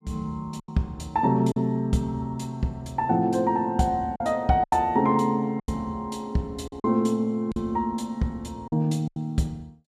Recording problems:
lost packets; 6% of the sound replaced, filled with silence

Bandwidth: 14.5 kHz